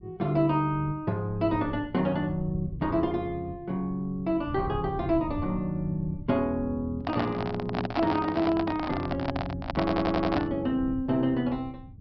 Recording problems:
treble missing; nothing above 5.5 kHz
low-frequency rumble; below 130 Hz, SNR 14 dB
microphone handling noise; from 7 to 11 s; peak +2 dB vs average level
stutter; at 10 s

